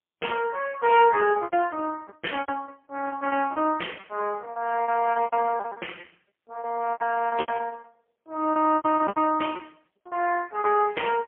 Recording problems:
telephone audio; 260 Hz to 3.2 kHz, AMR-NB, then MP3
lost packets; 15% of the sound replaced, filled with repeated pitch periods

